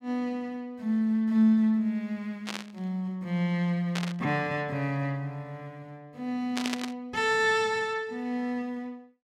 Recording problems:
static burst; at 2.5 s, at 4 s and at 6.5 s; peak +1 dB vs average level

